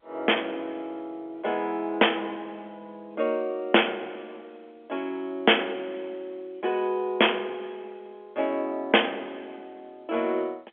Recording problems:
phone line; 300 Hz to 3.4 kHz, G.711

